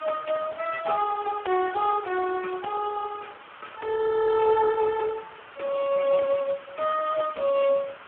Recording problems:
phone line; 280 Hz to 2.3 kHz, Speex
hiss; SNR 19 dB

